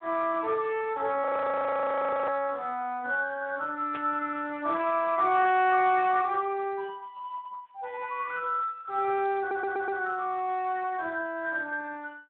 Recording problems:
phone line; 300 Hz to 3.5 kHz, Speex
audio freezing; at 1 s for 1 s
static burst; at 4 s; peak -10 dB vs average level
audio stuttering; at 9.5 s

